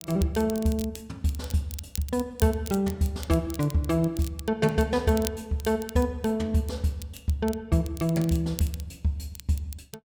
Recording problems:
crackle; vinyl, SNR 16 dB

